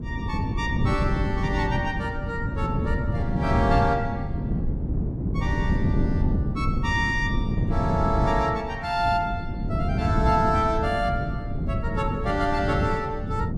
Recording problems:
wind noise; below 200 Hz, SNR 0 dB

